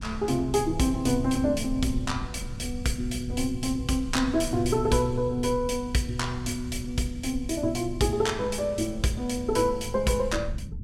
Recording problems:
low-frequency rumble; below 98 Hz, SNR 11 dB

